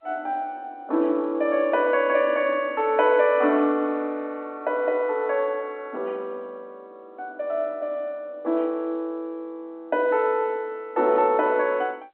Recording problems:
telephone audio; 240 Hz to 3.4 kHz, G.711

